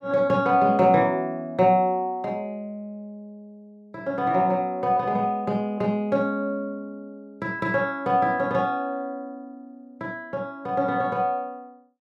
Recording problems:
none

